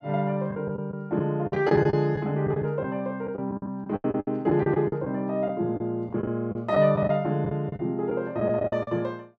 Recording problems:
lost packets; 12% of the sound replaced, filled with the last packet

